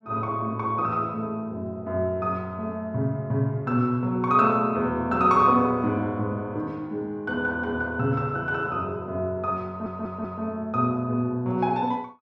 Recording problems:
audio stuttering; at 9.5 s

